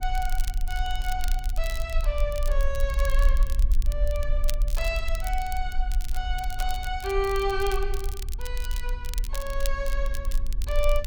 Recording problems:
hum; 60 Hz, harmonics up to 840 Hz, SNR 20 dB
low-frequency rumble; below 46 Hz, SNR -2 dB
crackle; vinyl, SNR 10 dB

